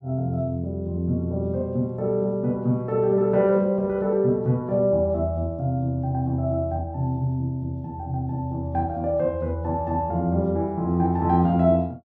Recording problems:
none

